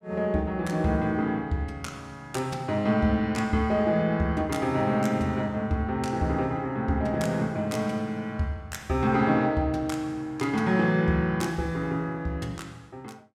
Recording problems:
none

